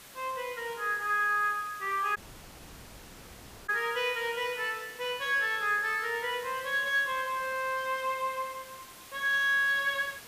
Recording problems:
hiss; slope -1 dB per octave, SNR 18 dB
audio cutting out; at 2 s for 1.5 s

